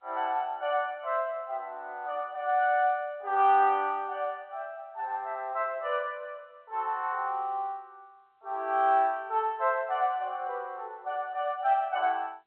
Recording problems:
phone line; 300 Hz to 3.5 kHz, G.711

